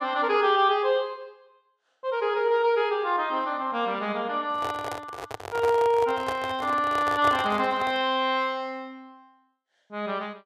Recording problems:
microphone handling noise; from 4.5 to 8 s; peak -3 dB vs average level

